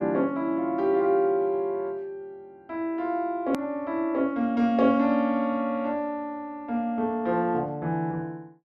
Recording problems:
click at an edit; at 3.5 s

